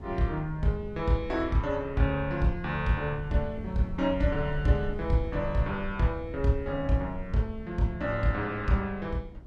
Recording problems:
rumble; below 98 Hz, SNR 12 dB

